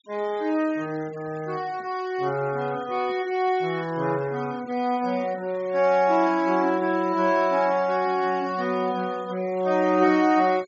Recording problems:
treble missing; nothing above 8 kHz
noise reduction artefacts; signal-to-artefact ratio 23 dB

